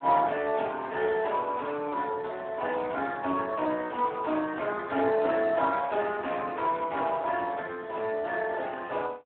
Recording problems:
telephone audio; 220 Hz to 2.8 kHz, Speex

